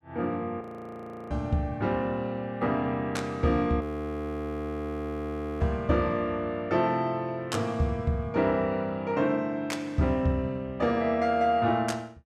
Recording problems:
frozen audio; at 0.5 s for 0.5 s and at 4 s for 2 s

